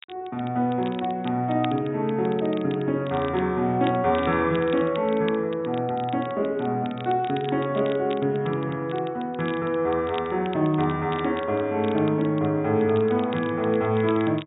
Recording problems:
low-pass filter; nothing above 4 kHz
crackle; vinyl, SNR 20 dB

